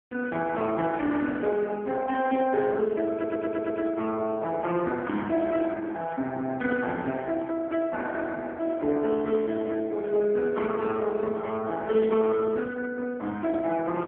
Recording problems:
telephone audio; 170 Hz to 2.6 kHz, AMR-NB
stutter; at 3 s

